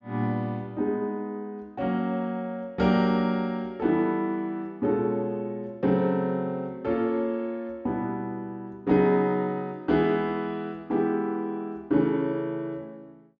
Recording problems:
low-pass filter; nothing above 8 kHz

